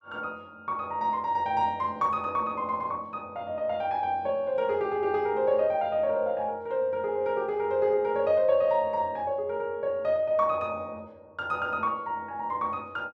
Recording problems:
none

